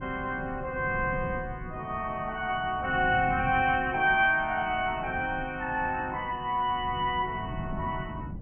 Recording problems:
low-pass filter; nothing above 3.1 kHz
wind noise; below 200 Hz, SNR 12 dB

